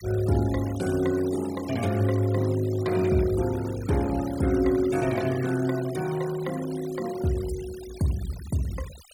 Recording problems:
denoising artefacts; signal-to-artefact ratio 18 dB

